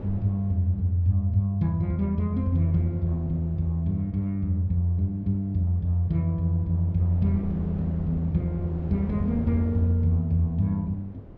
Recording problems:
wind noise; below 320 Hz, SNR 16 dB

